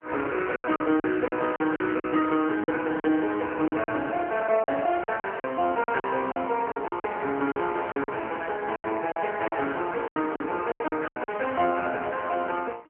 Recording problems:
phone line; 260 Hz to 3.2 kHz, AMR-NB
lost packets; 12% of the sound replaced, filled with silence

